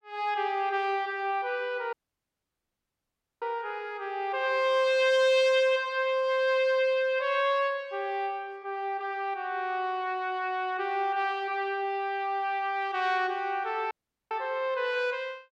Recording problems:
audio cutting out; at 2 s for 1.5 s and at 14 s

